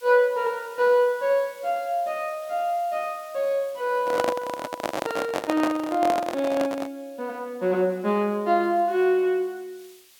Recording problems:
hiss; slope +3 dB per octave, SNR 26 dB
microphone handling noise; from 4 to 7 s; peak +3 dB vs average level

